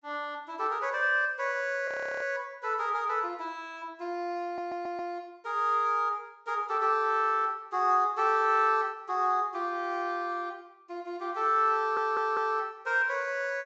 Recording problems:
low-pass filter; nothing above 8 kHz
frozen audio; at 2 s
audio stuttering; at 4.5 s and at 12 s

